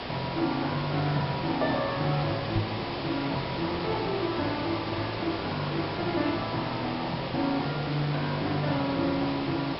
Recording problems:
low-pass filter; nothing above 5.4 kHz
hiss; slope -4 dB per octave, SNR 4 dB
knock on the microphone; at 2.5 s; peak +2 dB vs average level

